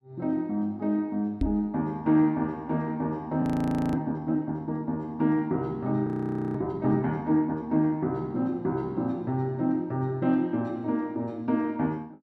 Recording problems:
microphone thump; at 1.5 s; peak +4 dB vs average level
frozen audio; at 3.5 s for 0.5 s and at 6 s

